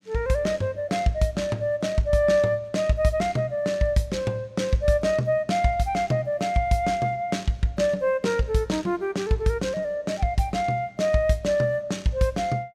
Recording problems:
none

